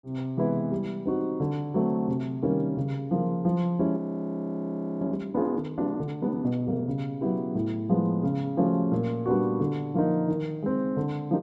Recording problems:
audio freezing; at 4 s for 1 s

